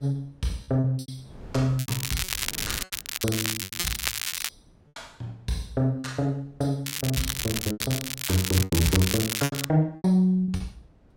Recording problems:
wind on the microphone; below 290 Hz, SNR 22 dB
packet loss; 11% of the sound replaced, filled with repeated pitch periods
crackling; from 2 to 4.5 s and from 7 to 9.5 s; loose cable, SNR 2 dB

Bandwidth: 16.5 kHz